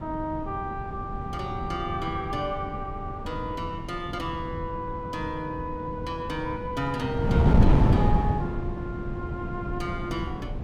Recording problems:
wind noise; below 230 Hz, SNR -3 dB

